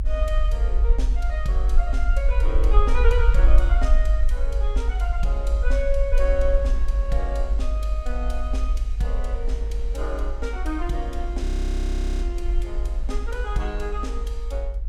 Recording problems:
low-frequency rumble; below 50 Hz, SNR -6 dB
wind on the microphone; below 510 Hz, SNR 19 dB
frozen audio; at 11 s for 1 s

